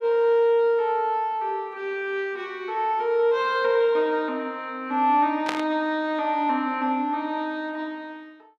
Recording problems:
burst of static; at 5.5 s; peak 0 dB vs average level

